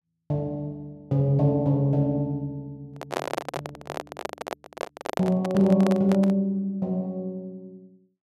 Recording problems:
handling noise; from 3 to 6.5 s; peak 0 dB vs average level

